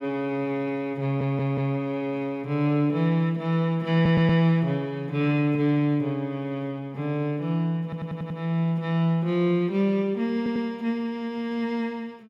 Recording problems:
audio stuttering; 4 times, first at 1 s

